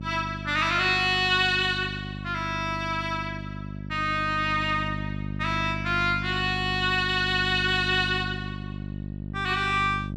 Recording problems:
electrical hum; 50 Hz, harmonics up to 650 Hz, SNR 10 dB

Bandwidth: 14 kHz